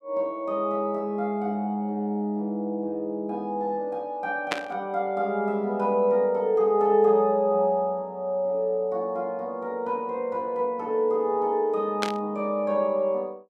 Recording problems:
burst of static; at 4.5 s and at 12 s; peak +3 dB vs average level

